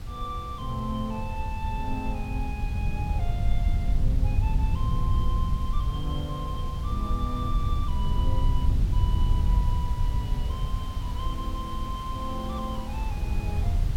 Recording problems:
hiss; slope -4 dB per octave, SNR 11 dB
wind noise; below 86 Hz, SNR -7 dB

